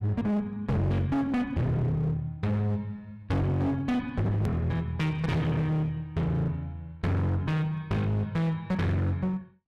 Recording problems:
distorted audio; hard clipping, uneven, signal-to-distortion ratio 6 dB
edit click; at 4.5 s

